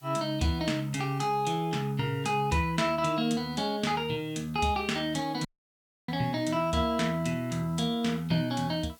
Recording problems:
background hiss; slope 0 dB per octave, SNR 27 dB
audio cutting out; at 5.5 s for 0.5 s

